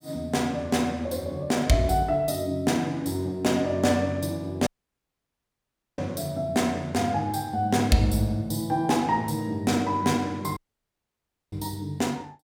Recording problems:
audio cutting out; at 4.5 s for 1.5 s and at 11 s for 1 s

